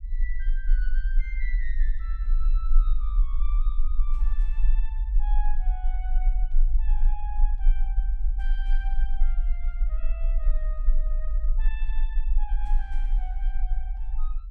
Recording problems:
low-frequency rumble; below 36 Hz, strongest tone 20 Hz, SNR -17 dB

